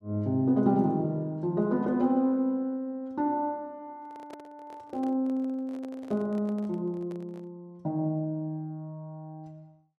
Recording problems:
microphone handling noise; from 4 to 7.5 s; peak -12 dB vs average level

